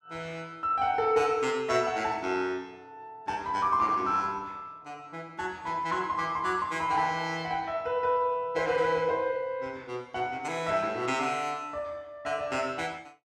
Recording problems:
none

